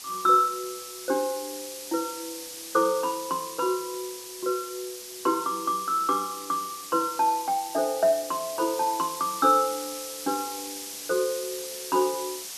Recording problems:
hiss; SNR 10 dB

